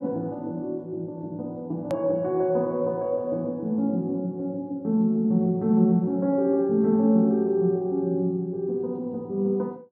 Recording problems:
click at an edit; at 2 s

